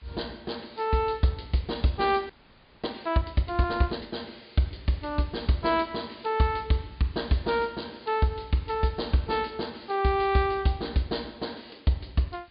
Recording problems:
treble cut off; nothing above 4.9 kHz
background hiss; SNR 27 dB
frozen audio; at 2.5 s for 0.5 s

